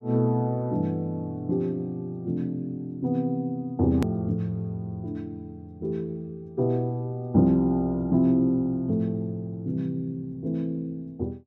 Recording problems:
edit click; at 4 s

